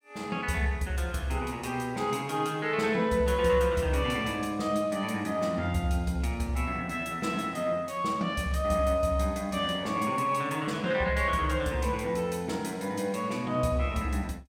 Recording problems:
none

